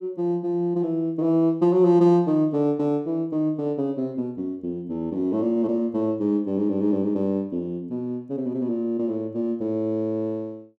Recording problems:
none

